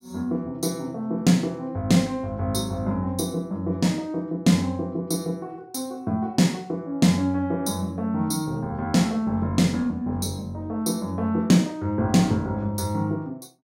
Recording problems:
none

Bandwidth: 16 kHz